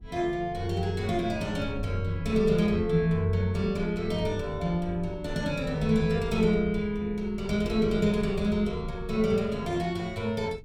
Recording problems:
wind noise; below 98 Hz, SNR 14 dB

